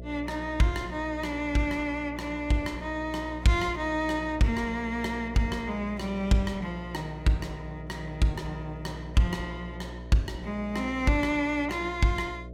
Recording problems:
mains hum; 60 Hz, harmonics up to 660 Hz, SNR 12 dB

